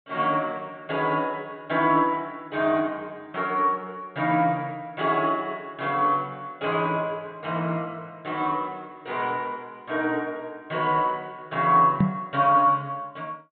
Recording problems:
low-pass filter; nothing above 4 kHz
microphone thump; at 12 s; peak +7 dB vs average level

